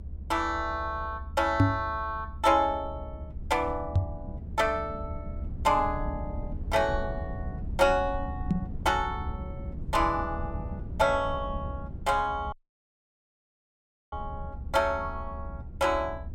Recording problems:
rumble; below 120 Hz, SNR 10 dB
microphone thump; at 1.5 s, at 4 s and at 8.5 s; peak +10 dB vs average level
audio cutting out; at 13 s for 1.5 s

